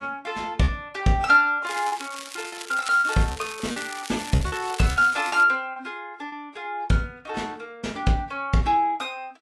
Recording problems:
lossy compression; AAC, log-spectral distance 4 dB
packet loss; 5% of the sound replaced, filled with repeated pitch periods
crackling; from 1.5 to 5.5 s; loose cable, SNR 13 dB

